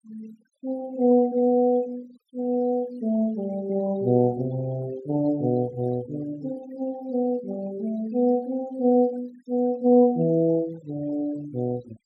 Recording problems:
noise reduction artefacts; signal-to-artefact ratio 22 dB

